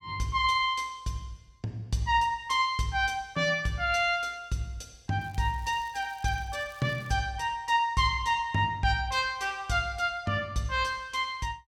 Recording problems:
crackle; from 5 to 7 s; loose cable, SNR 28 dB

